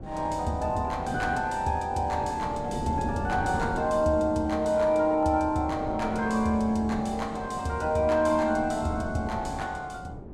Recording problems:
wind noise; below 360 Hz, SNR 11 dB

